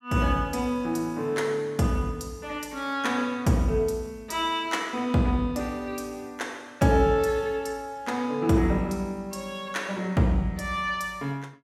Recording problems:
none

